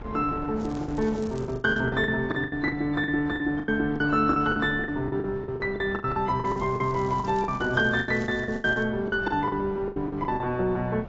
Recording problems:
codec artefacts; AAC, log-spectral distance 2 dB, nothing above 7.3 kHz
wind noise; below 450 Hz, SNR 15 dB
lost packets; 17% of the sound replaced, filled with the last packet
crackle; from 0.5 to 2 s and from 6.5 to 9 s; loose cable, SNR 26 dB

